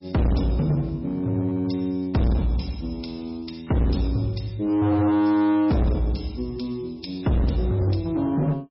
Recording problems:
lossy codec; MP3, log-spectral distance 4 dB, nothing above 5.3 kHz
distorted audio; hard clipping, uneven, signal-to-distortion ratio 6 dB

